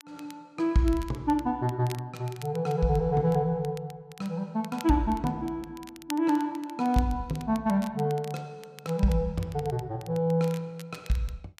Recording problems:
crackling; vinyl, SNR 21 dB

